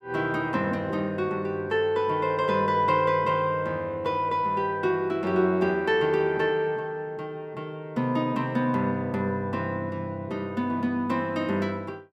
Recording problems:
none

